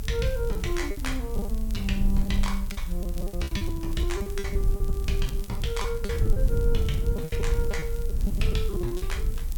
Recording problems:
hiss; slope -2 dB per octave, SNR 15 dB
rumble; below 60 Hz, strongest tone 26 Hz, SNR -2 dB
crackle; vinyl, SNR 19 dB
packet loss; 13% of the sound replaced, filled with repeated pitch periods

